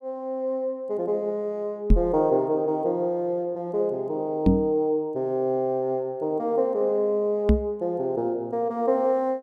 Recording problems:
knock on the microphone; at 2 s, at 4.5 s and at 7.5 s; peak +10 dB vs average level

